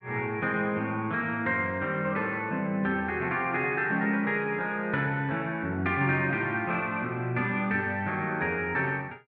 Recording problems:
none

